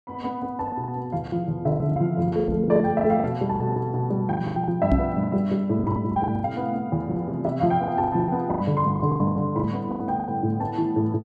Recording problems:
lost packets; 16% of the sound replaced, filled with the last packet
microphone thump; at 2.5 s and at 5 s; peak +7 dB vs average level

